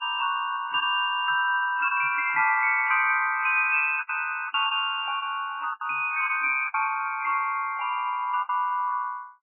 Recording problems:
lossy codec; MP3, log-spectral distance 3 dB, nothing above 2.5 kHz
packet loss; 5% of the sound replaced, filled with the last packet

